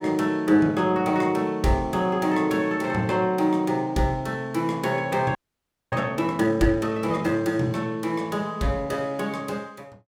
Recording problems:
frozen audio; at 5.5 s for 0.5 s

